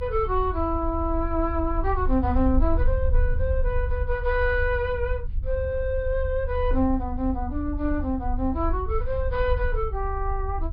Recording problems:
treble missing; nothing above 5 kHz
rumble; below 76 Hz, strongest tone 28 Hz, SNR 3 dB

